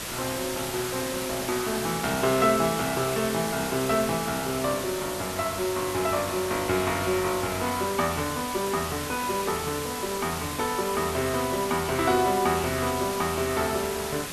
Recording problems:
background hiss; slope -2 dB per octave, SNR 6 dB

